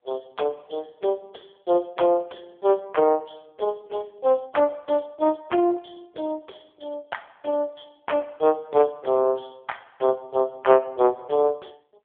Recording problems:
telephone audio; 320 Hz to 3.4 kHz, AMR-NB

